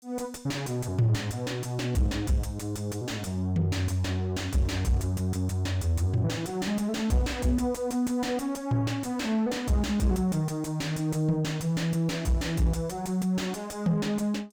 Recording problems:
distorted audio; soft clipping, signal-to-distortion ratio 6 dB

